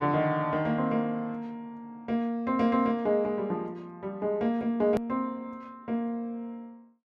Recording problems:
click at an edit; at 5 s

